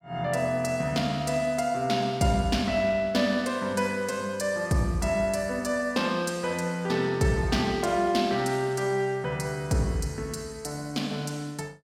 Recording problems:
none

